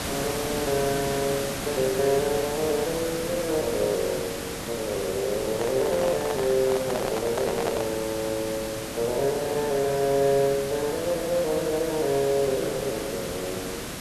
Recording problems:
hiss; slope -3 dB per octave, SNR 6 dB
handling noise; from 5.5 to 8 s; peak +1 dB vs average level

